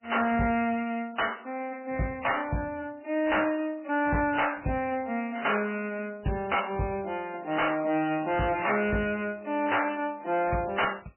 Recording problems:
lossy codec; MP3, log-spectral distance 5 dB, nothing above 2.7 kHz
distorted audio; hard clipping, signal-to-distortion ratio 10 dB

